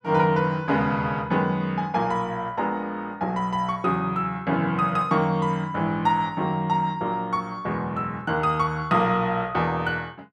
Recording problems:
none

